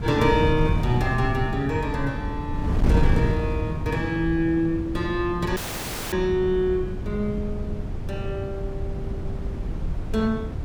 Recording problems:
wind noise; below 160 Hz, SNR 3 dB
audio cutting out; at 5.5 s for 0.5 s

